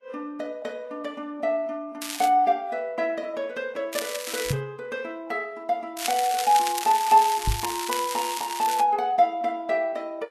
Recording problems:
lossy codec; Vorbis, log-spectral distance 4 dB, nothing above 13.5 kHz
crackle; at 2 s, at 4 s and from 6 to 9 s; loose cable, SNR 7 dB
microphone bump; at 4.5 s and at 7.5 s; peak +2 dB vs average level

